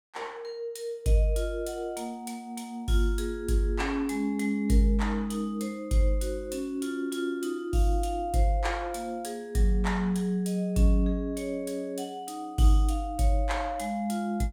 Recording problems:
none

